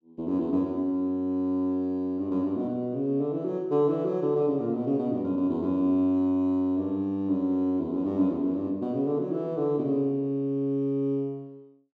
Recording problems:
none

